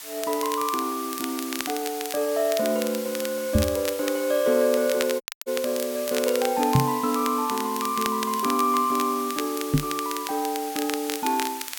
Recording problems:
background hiss; SNR 10 dB
crackle; vinyl, SNR 10 dB
microphone bump; at 3.5 s, at 7 s and at 9.5 s; peak +8 dB vs average level
audio cutting out; at 5 s

